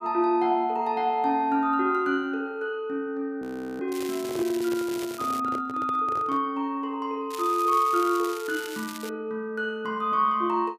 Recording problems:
frozen audio; at 3.5 s
handling noise; from 4 to 6.5 s; peak -6 dB vs average level
crackling; from 4 to 5.5 s and from 7.5 to 9 s; loose cable, SNR 14 dB

